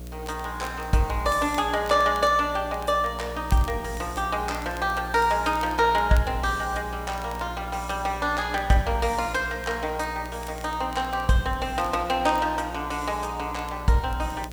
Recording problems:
hum; 60 Hz, harmonics up to 720 Hz, SNR 13 dB
hiss; SNR 24 dB
crackling; vinyl, SNR 25 dB

